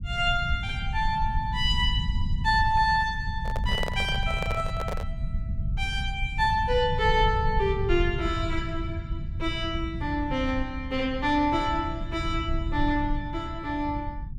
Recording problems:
low-frequency rumble; below 100 Hz, SNR 5 dB
handling noise; from 3.5 to 5 s; peak -1 dB vs average level

